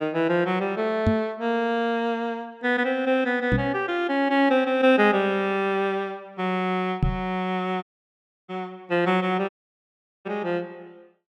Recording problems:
knock on the microphone; at 1 s, at 3.5 s and at 7 s; peak +5 dB vs average level
audio cutting out; at 8 s for 0.5 s and at 9.5 s for 1 s

